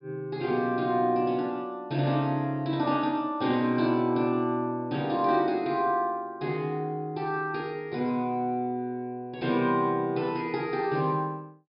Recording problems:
treble missing; nothing above 5.5 kHz

